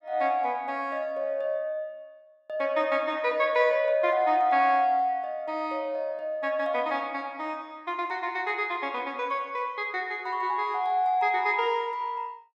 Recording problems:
none

